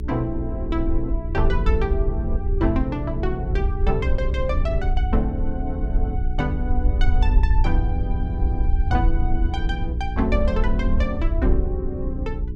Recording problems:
hum; 60 Hz, harmonics up to 420 Hz, SNR 6 dB
rumble; below 64 Hz, SNR -2 dB

